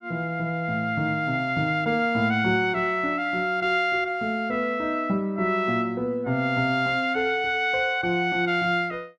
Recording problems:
none

